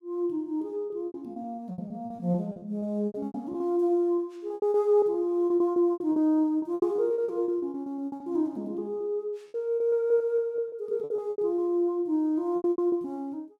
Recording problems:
packet loss; 17% of the sound replaced, filled with repeated pitch periods

